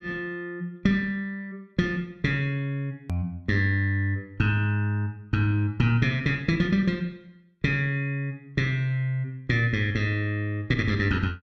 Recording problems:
click at an edit; at 3 s

